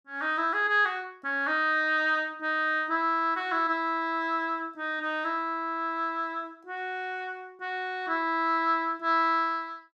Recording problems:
none

